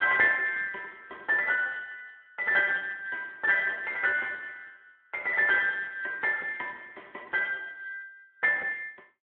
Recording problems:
phone line; 370 Hz to 3.5 kHz, Speex

